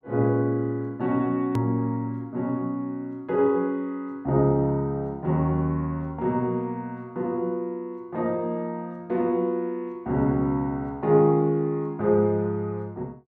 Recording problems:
hard cut with a click; at 1.5 s

